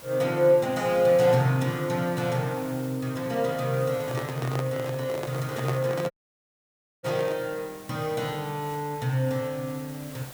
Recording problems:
background hiss; slope -3 dB per octave, SNR 18 dB
handling noise; from 4 to 7.5 s; peak -2 dB vs average level
audio cutting out; at 6 s for 1 s

